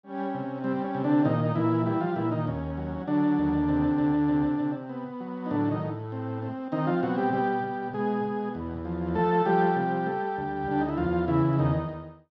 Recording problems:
none

